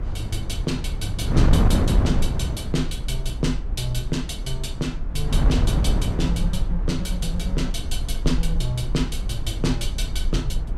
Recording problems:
low-frequency rumble; below 48 Hz, SNR 3 dB
wind on the microphone; below 160 Hz, SNR -1 dB

